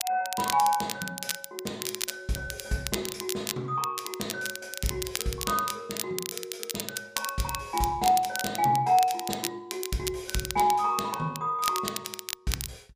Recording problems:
crackling; vinyl, SNR 5 dB

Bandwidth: 15 kHz